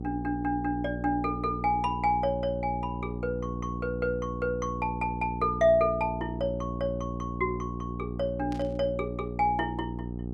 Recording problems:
hum; 60 Hz, harmonics up to 780 Hz, SNR 6 dB
burst of static; at 8.5 s; peak -13 dB vs average level

